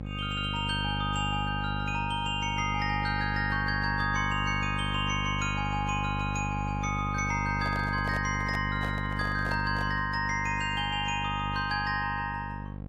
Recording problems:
lossy compression; AAC, log-spectral distance 2 dB, nothing above 14.7 kHz
hum; 50 Hz, harmonics up to 800 Hz, SNR 4 dB
handling noise; from 7.5 to 10 s; peak -6 dB vs average level

